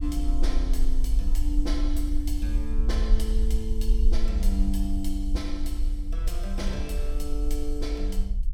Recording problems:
rumble; below 48 Hz, SNR -6 dB

